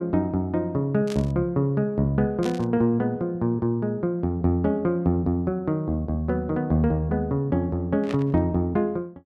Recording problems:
burst of static; at 1 s, at 2.5 s and at 8 s; peak -8 dB vs average level

